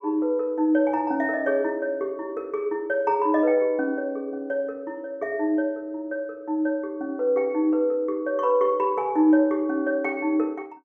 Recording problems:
none

